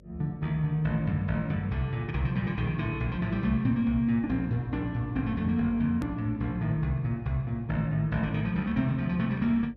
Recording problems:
treble cut off; nothing above 8 kHz
electrical hum; 50 Hz, harmonics up to 600 Hz, SNR 25 dB
hard cut with a click; at 6 s

